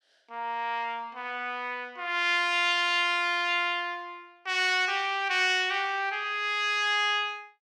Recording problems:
none

